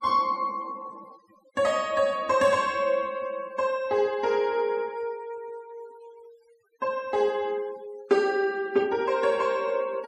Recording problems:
noise reduction artefacts; signal-to-artefact ratio 25 dB

